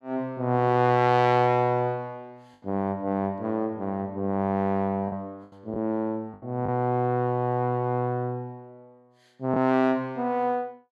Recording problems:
lost packets; 2% of the sound replaced, filled with the last packet

